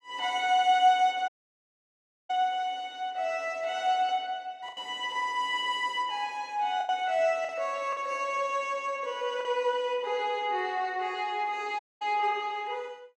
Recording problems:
packet loss; 2% of the sound replaced, filled with the last packet
audio cutting out; at 1.5 s for 1 s and at 12 s

